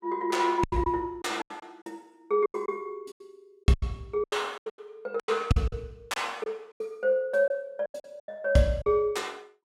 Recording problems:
lost packets; 15% of the sound replaced, filled with silence

